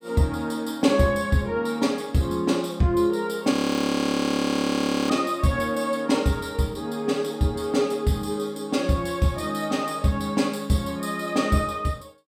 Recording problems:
audio freezing; at 3.5 s for 1.5 s

